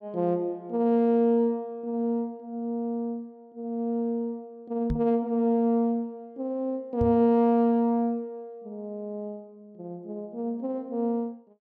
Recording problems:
microphone bump; at 5 s and at 7 s; peak +1 dB vs average level

